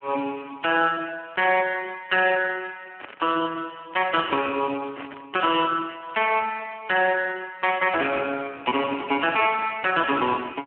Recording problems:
telephone audio; 220 Hz to 3.1 kHz, Speex
static burst; at 3 s, at 5 s and at 9 s; peak -9 dB vs average level

